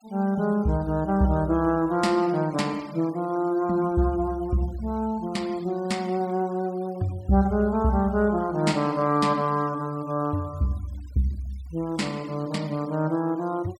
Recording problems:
noise reduction artefacts; signal-to-artefact ratio 25 dB

